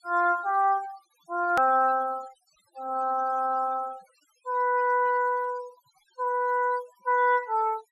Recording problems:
denoising artefacts; signal-to-artefact ratio 24 dB
hard cut with a click; at 1.5 s

